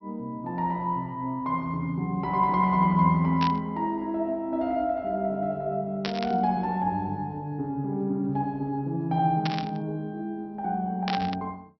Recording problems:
treble cut off; nothing above 5.7 kHz
burst of static; 4 times, first at 3.5 s; peak 0 dB vs average level

